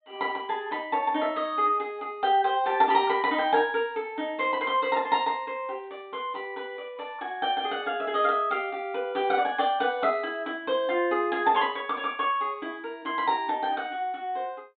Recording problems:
treble missing; nothing above 4 kHz

